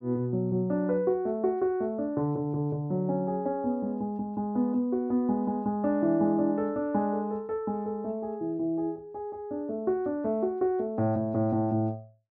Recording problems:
none

